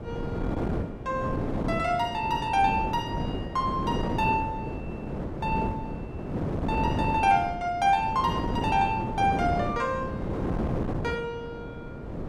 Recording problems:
wind noise; below 430 Hz, SNR 4 dB

